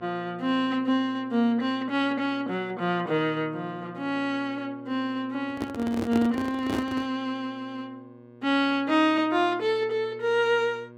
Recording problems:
hum; 60 Hz, harmonics up to 1.7 kHz, SNR 21 dB
handling noise; from 5.5 to 7 s; peak +1 dB vs average level

